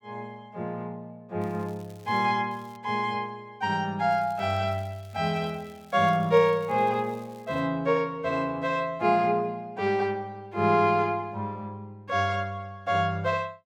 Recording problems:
crackling; at 1.5 s, at 2.5 s and from 4 to 7.5 s; loose cable, SNR 30 dB

